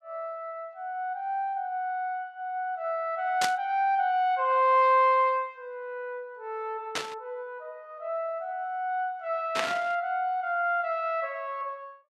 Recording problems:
static burst; at 3.5 s, at 7 s and at 9.5 s; peak +3 dB vs average level

